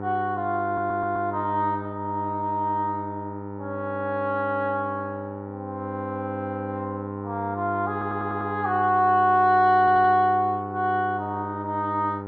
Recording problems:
hum; 50 Hz, harmonics up to 1.8 kHz, SNR 10 dB
stutter; at 0.5 s, at 8 s and at 10 s

